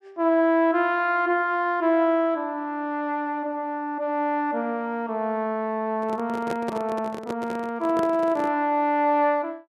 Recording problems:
microphone handling noise; from 6 to 8.5 s; peak -4 dB vs average level

